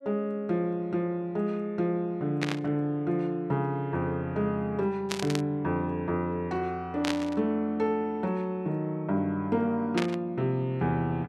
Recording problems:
static burst; 4 times, first at 2.5 s; peak +2 dB vs average level

